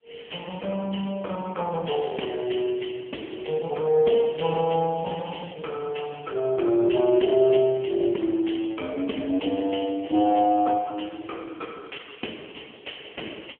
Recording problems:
telephone audio; 190 Hz to 3.3 kHz, AMR-NB

